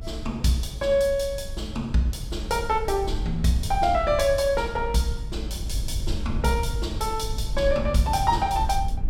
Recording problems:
low-frequency rumble; below 74 Hz, SNR 7 dB

